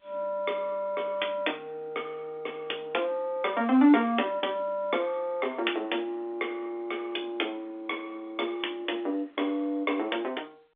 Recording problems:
phone line; 240 Hz to 3.6 kHz, G.711

